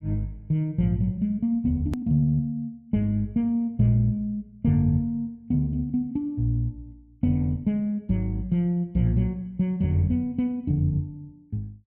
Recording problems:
click at an edit; at 2 s

